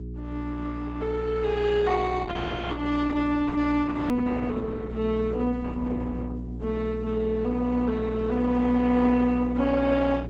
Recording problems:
codec artefacts; Opus, log-spectral distance 3 dB, nothing above 18.9 kHz
mains hum; 60 Hz, harmonics up to 420 Hz, SNR 10 dB
edit click; at 4 s

